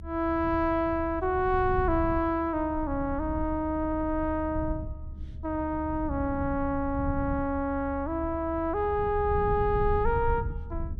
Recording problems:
low-frequency rumble; below 100 Hz, SNR 8 dB
audio stuttering; at 4 s

